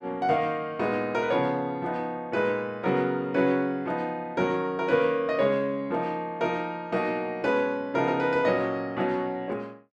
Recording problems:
none

